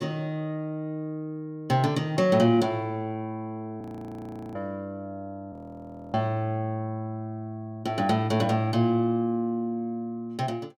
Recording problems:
frozen audio; at 4 s for 0.5 s and at 5.5 s for 0.5 s

